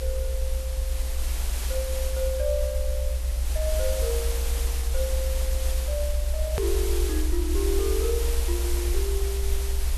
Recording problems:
background hiss; slope -2 dB per octave, SNR 3 dB
rumble; below 62 Hz, strongest tone 60 Hz, SNR -4 dB
edit click; at 6.5 s

